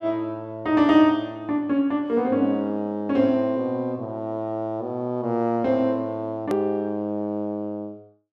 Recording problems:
edit click; at 6.5 s

